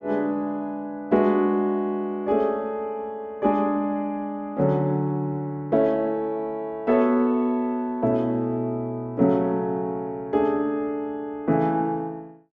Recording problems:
none

